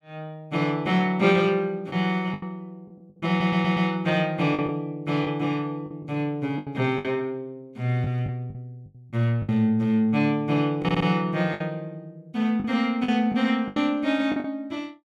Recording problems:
lost packets; 7% of the sound replaced, filled with the last packet
stutter; at 3.5 s and at 11 s

